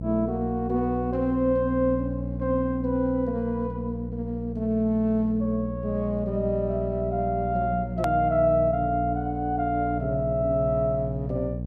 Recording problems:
hum; 60 Hz, harmonics up to 540 Hz, SNR 7 dB
click at an edit; at 8 s

